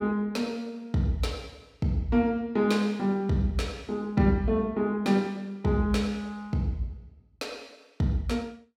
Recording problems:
none

